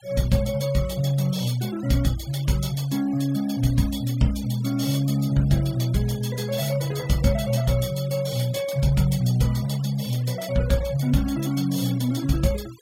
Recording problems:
denoising artefacts; signal-to-artefact ratio 20 dB

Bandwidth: 16 kHz